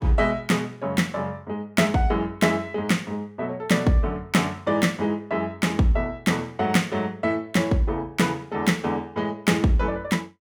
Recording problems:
none

